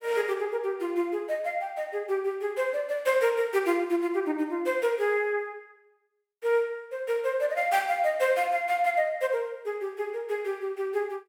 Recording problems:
none

